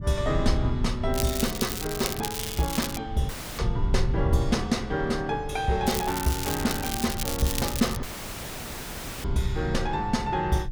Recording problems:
rumble; below 120 Hz, SNR 5 dB
crackle; from 1 to 3 s and from 6 to 8 s; loose cable, SNR 4 dB
audio cutting out; at 3.5 s and at 8 s for 1 s

